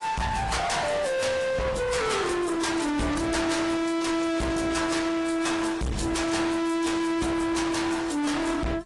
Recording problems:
lossy compression; AAC, then AAC, log-spectral distance 5 dB
distortion; hard clipping, uneven, signal-to-distortion ratio 5 dB

